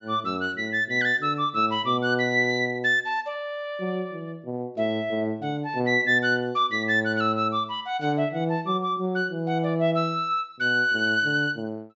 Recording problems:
treble missing; nothing above 8 kHz

